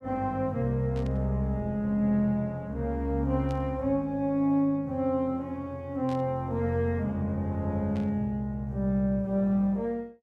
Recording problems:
static burst; 4 times, first at 1 s; peak -15 dB vs average level

